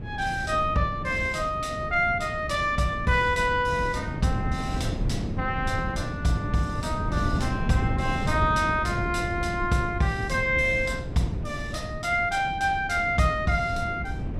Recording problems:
wind on the microphone; below 210 Hz, SNR 6 dB

